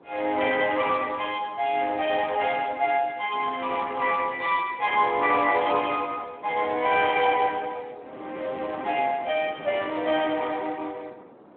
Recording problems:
telephone audio; 280 Hz to 3.3 kHz, Speex
wind on the microphone; below 750 Hz, SNR 21 dB

